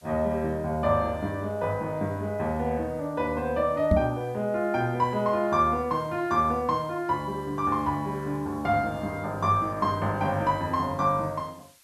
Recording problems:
background hiss; slope +2 dB per octave, SNR 30 dB
knock on the microphone; at 4 s; peak +7 dB vs average level

